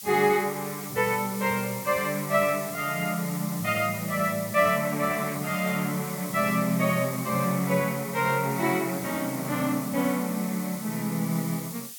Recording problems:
hiss; slope +5 dB per octave, SNR 10 dB

